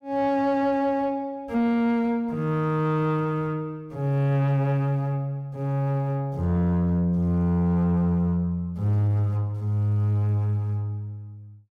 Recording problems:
distorted audio; soft clipping, signal-to-distortion ratio 12 dB

